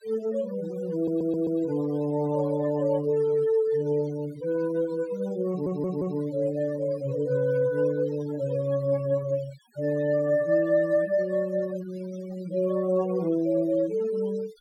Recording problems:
noise reduction artefacts; signal-to-artefact ratio 20 dB
stutter; at 1 s and at 5.5 s

